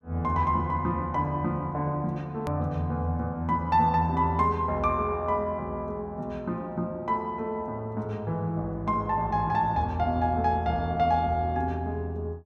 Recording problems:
click at an edit; at 2.5 s

